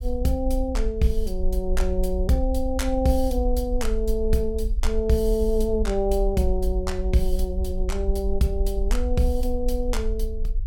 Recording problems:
rumble; below 52 Hz, SNR 3 dB

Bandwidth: 17 kHz